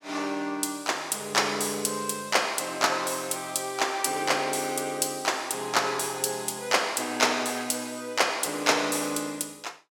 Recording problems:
none

